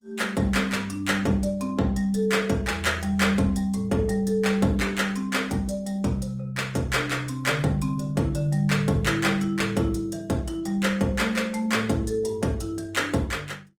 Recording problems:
lossy codec; Opus, log-spectral distance 3 dB

